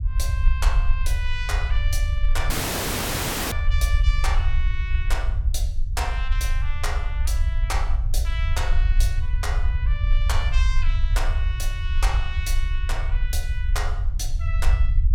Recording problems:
rumble; below 62 Hz, SNR -7 dB
dropout; at 2.5 s for 1 s

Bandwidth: 17 kHz